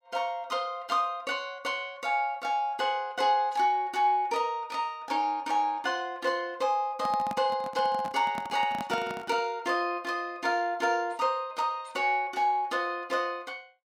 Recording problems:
handling noise; from 7 to 9.5 s; peak -3 dB vs average level

